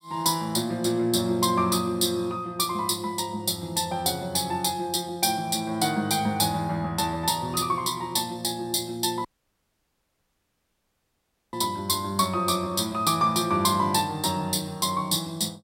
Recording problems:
dropout; at 9.5 s for 2.5 s

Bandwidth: 16 kHz